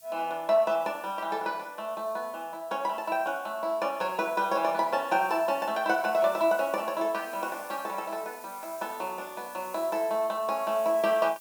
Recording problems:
background hiss; SNR 20 dB

